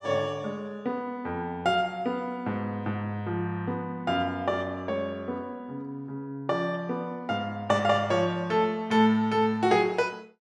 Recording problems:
none

